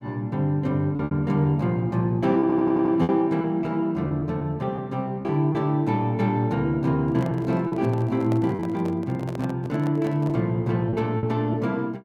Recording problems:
lost packets; 5% of the sound replaced, filled with repeated pitch periods
audio stuttering; at 2.5 s
microphone handling noise; from 7 to 10 s; peak -7 dB vs average level

